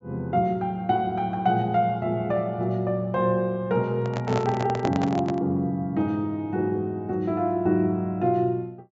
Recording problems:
treble cut off; nothing above 8 kHz
microphone handling noise; from 4 to 5.5 s; peak 0 dB vs average level

